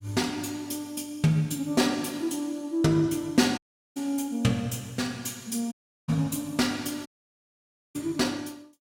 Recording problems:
audio cutting out; at 3.5 s, at 5.5 s and at 7 s for 1 s

